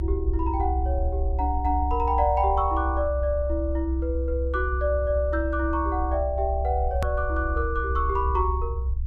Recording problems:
low-frequency rumble; below 68 Hz, strongest tone 66 Hz, SNR 2 dB
hard cut with a click; at 7 s

